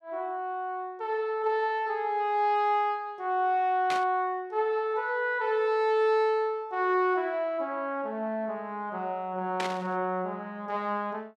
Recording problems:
static burst; at 4 s and at 9.5 s; peak -1 dB vs average level

